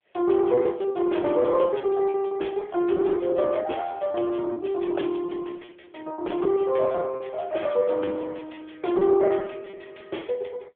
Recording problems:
telephone audio; 260 Hz to 3.4 kHz, AMR-NB
lost packets; 15% of the sound replaced, filled with repeated pitch periods

